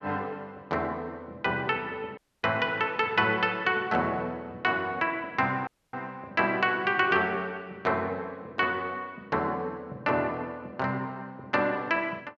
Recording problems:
dropout; at 2 s and at 5.5 s

